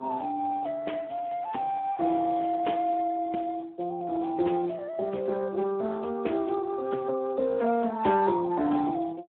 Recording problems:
telephone audio; 190 Hz to 2.5 kHz, Speex
crackling; from 1 to 3 s; loose cable, SNR 27 dB

